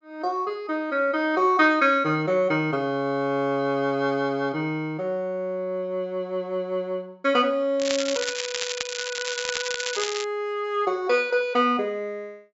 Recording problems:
treble cut off; nothing above 8 kHz
crackling; from 8 to 10 s; loose cable, SNR 5 dB

